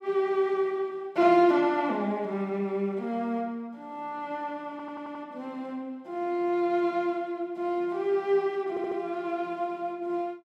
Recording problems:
audio stuttering; at 4.5 s and at 8.5 s

